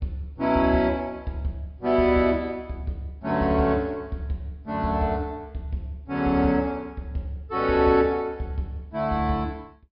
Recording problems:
low-pass filter; nothing above 5.5 kHz

